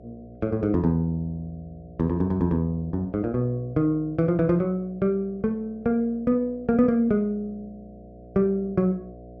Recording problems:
hum; 60 Hz, harmonics up to 720 Hz, SNR 21 dB

